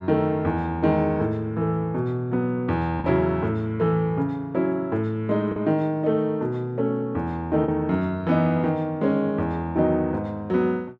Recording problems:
packet loss; 1.1% of the sound replaced, filled with the last packet

